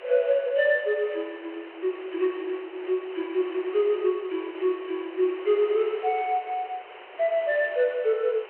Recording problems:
phone line; 320 Hz to 3.1 kHz, G.726
background hiss; SNR 17 dB

